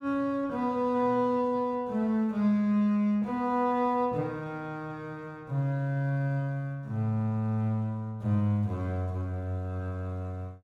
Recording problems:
none

